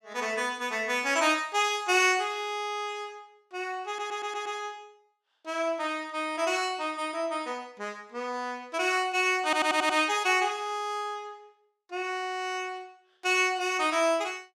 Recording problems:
stutter; at 4 s and at 9.5 s

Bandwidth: 15.5 kHz